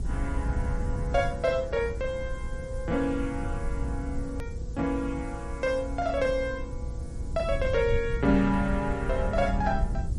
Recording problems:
lossy compression; MP3, log-spectral distance 2 dB
electrical hum; 60 Hz, harmonics up to 840 Hz, SNR 21 dB
hiss; SNR 25 dB
low-frequency rumble; below 92 Hz, SNR 5 dB
click at an edit; at 4.5 s

